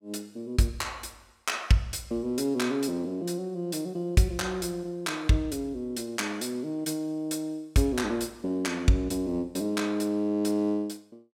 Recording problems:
none

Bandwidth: 16.5 kHz